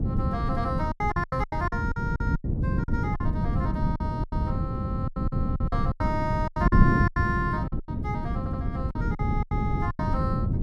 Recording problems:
wind on the microphone; below 190 Hz, SNR -4 dB
lost packets; 15% of the sound replaced, filled with silence
stutter; at 8.5 s

